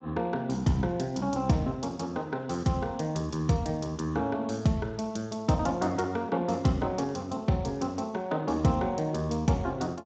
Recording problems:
lossy compression; Speex, log-spectral distance 4 dB

